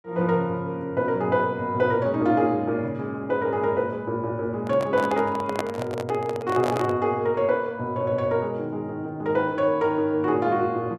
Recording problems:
handling noise; from 4.5 to 7 s; peak +2 dB vs average level

